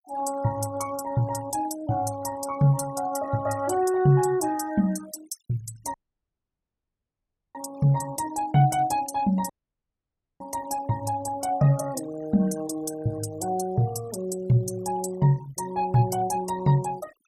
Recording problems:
denoising artefacts; signal-to-artefact ratio 19 dB
audio cutting out; at 6 s for 1.5 s and at 9.5 s for 1 s

